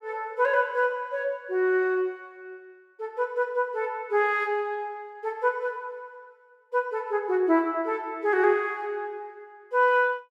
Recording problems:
none

